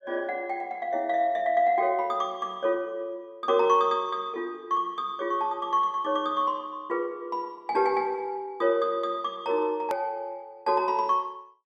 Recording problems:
edit click; at 10 s

